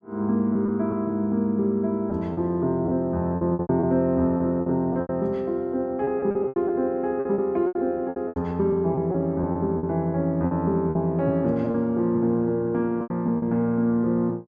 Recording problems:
lost packets; 11% of the sound replaced, filled with repeated pitch periods

